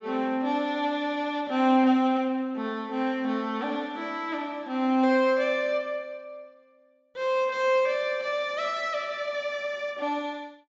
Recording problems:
treble cut off; nothing above 8 kHz

